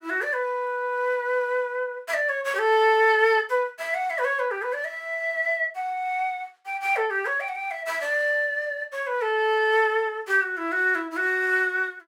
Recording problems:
none

